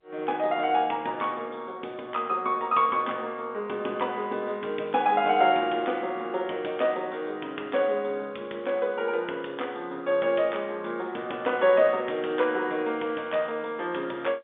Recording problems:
phone line; 320 Hz to 3.6 kHz, G.711

